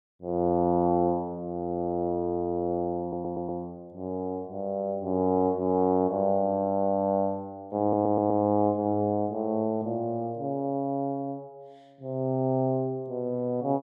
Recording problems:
stutter; at 3 s and at 8 s

